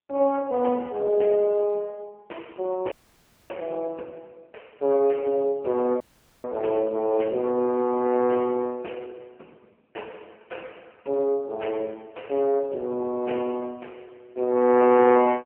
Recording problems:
phone line; 260 Hz to 3.1 kHz, AMR-NB
audio cutting out; at 3 s for 0.5 s and at 6 s

